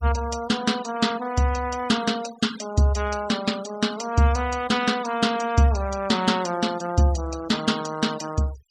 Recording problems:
noise reduction artefacts; signal-to-artefact ratio 16 dB

